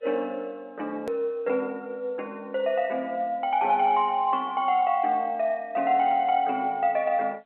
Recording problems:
phone line; 320 Hz to 3.1 kHz, G.711
click at an edit; at 1 s

